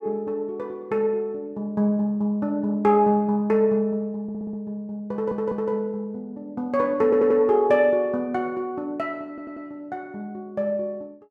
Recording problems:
stutter; 4 times, first at 4 s

